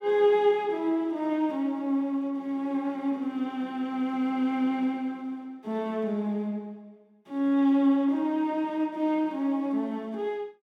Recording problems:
none

